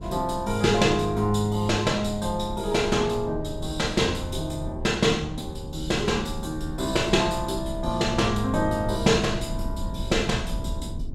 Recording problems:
wind on the microphone; below 140 Hz, SNR 11 dB

